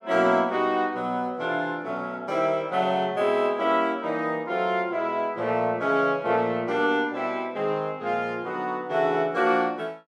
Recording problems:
none

